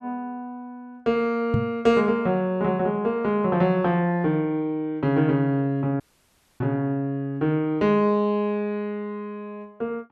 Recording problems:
microphone thump; at 1.5 s; peak +5 dB vs average level
audio cutting out; at 6 s for 0.5 s

